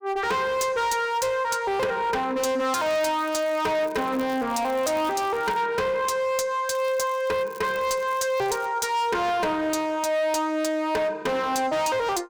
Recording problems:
distortion; hard clipping, uneven, signal-to-distortion ratio 8 dB
crackling; from 2.5 to 5.5 s and from 6.5 to 8.5 s; loose cable, SNR 23 dB

